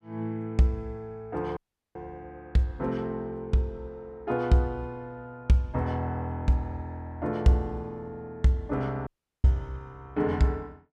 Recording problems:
audio cutting out; at 1.5 s and at 9 s

